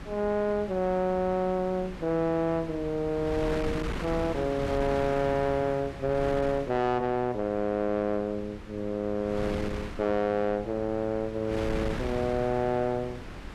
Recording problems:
distorted audio; soft clipping, signal-to-distortion ratio 11 dB
wind noise; below 870 Hz, SNR 10 dB

